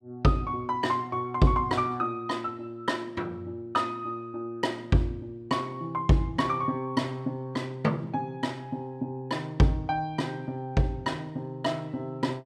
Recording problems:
none

